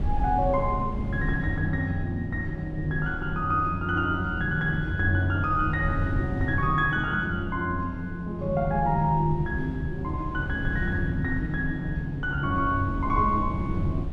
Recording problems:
wind noise; below 120 Hz, SNR 8 dB

